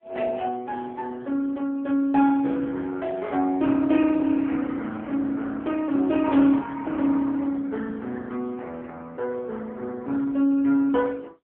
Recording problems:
phone line; 170 Hz to 3.1 kHz, AMR-NB

